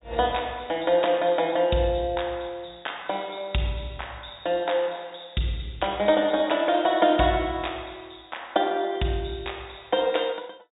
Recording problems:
low-pass filter; nothing above 4 kHz

